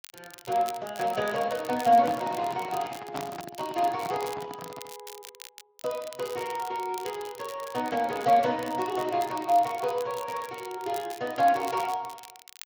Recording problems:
codec artefacts; Speex, then MP3, log-spectral distance 3 dB
crackling; vinyl, SNR 18 dB
handling noise; from 2 to 5 s; peak -3 dB vs average level

